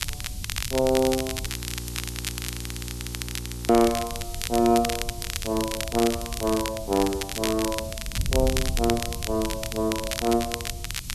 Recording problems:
hiss; SNR 15 dB
wind noise; below 120 Hz, SNR 10 dB
crackling; vinyl, SNR 7 dB
frozen audio; at 1.5 s for 2 s

